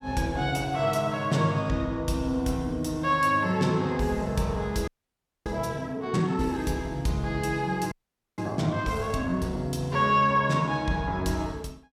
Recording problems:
audio freezing; at 5 s for 0.5 s and at 8 s

